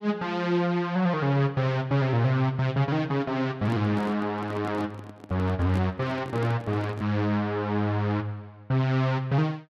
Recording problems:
handling noise; from 3.5 to 7 s; peak -4 dB vs average level

